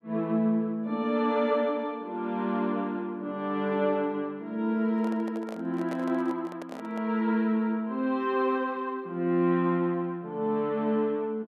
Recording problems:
microphone handling noise; from 5 to 7 s; peak -7 dB vs average level

